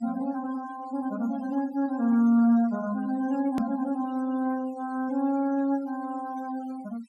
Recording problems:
denoising artefacts; signal-to-artefact ratio 20 dB
hard cut with a click; at 3.5 s

